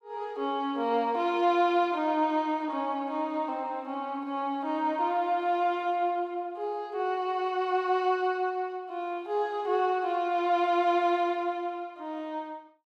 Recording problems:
none

